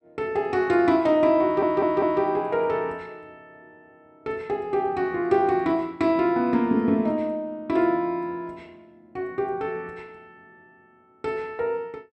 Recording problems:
audio stuttering; at 1.5 s

